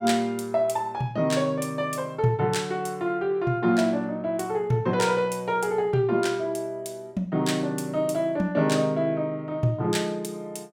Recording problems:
none

